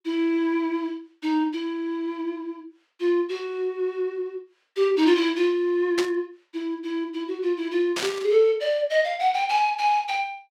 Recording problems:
static burst; at 6 s and at 8 s; peak 0 dB vs average level

